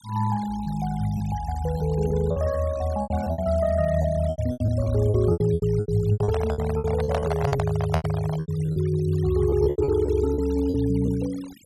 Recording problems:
denoising artefacts; signal-to-artefact ratio 20 dB
packet loss; 14% of the sound replaced, filled with repeated pitch periods
microphone handling noise; from 6 to 8.5 s; peak +2 dB vs average level

